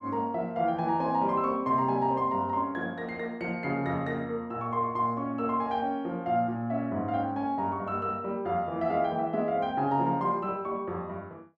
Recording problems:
none

